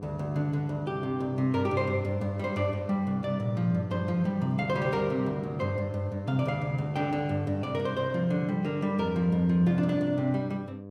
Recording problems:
electrical hum; 50 Hz, harmonics up to 1.1 kHz, SNR 15 dB

